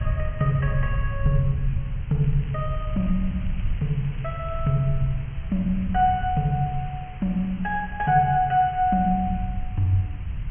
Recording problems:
treble cut off; nothing above 3.1 kHz
hiss; SNR 23 dB
low-frequency rumble; below 92 Hz, SNR 7 dB
crackling; from 2 to 4.5 s; loose cable, SNR 27 dB

